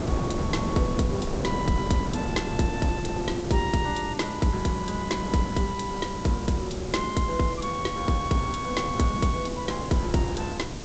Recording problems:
codec artefacts; G.722, log-spectral distance 10 dB, nothing above 7.8 kHz
hiss; slope +2 dB per octave, SNR 15 dB
wind on the microphone; below 420 Hz, SNR 6 dB

